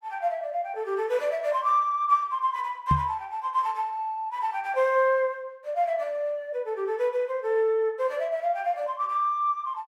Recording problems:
microphone thump; at 3 s; peak +5 dB vs average level

